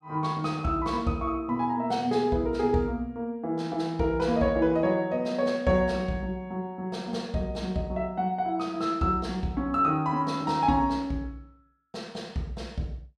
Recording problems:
none

